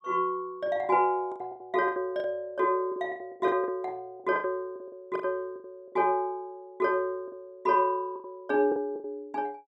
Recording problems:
packet loss; 13% of the sound replaced, filled with the last packet

